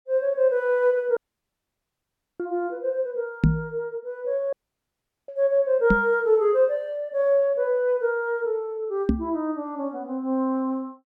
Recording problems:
audio cutting out; at 1 s for 1 s and at 4.5 s for 1 s
microphone bump; at 3.5 s, at 6 s and at 9 s; peak +8 dB vs average level

